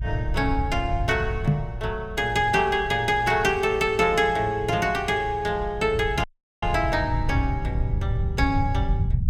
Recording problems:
low-frequency rumble; below 110 Hz, SNR 7 dB
microphone bump; at 1.5 s; peak +7 dB vs average level
audio cutting out; at 6 s

